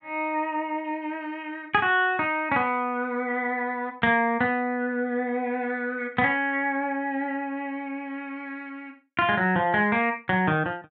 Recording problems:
none

